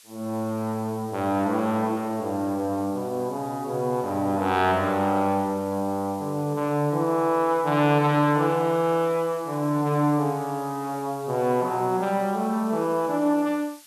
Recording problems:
hiss; slope +3 dB per octave, SNR 23 dB

